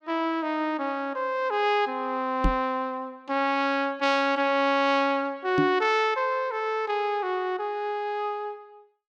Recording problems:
microphone bump; at 2.5 s and at 5.5 s; peak +4 dB vs average level

